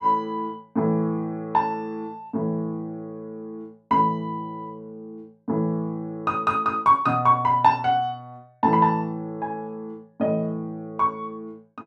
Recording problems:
none

